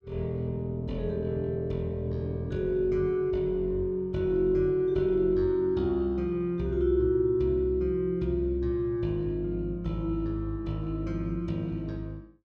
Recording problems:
none

